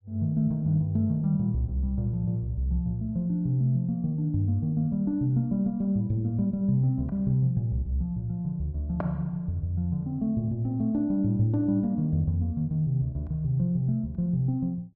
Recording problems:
none

